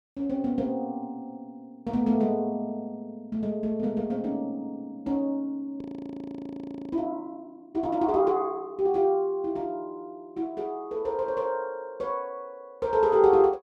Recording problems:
frozen audio; at 6 s for 1 s

